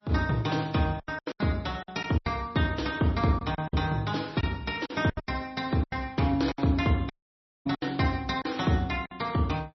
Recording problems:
lossy compression; MP3, log-spectral distance 3 dB, nothing above 5.7 kHz
packet loss; 10% of the sound replaced, filled with silence
dropout; at 7 s for 0.5 s

